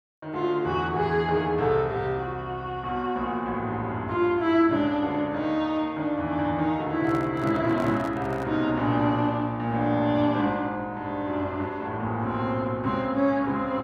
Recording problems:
handling noise; from 7 to 8.5 s; peak -9 dB vs average level

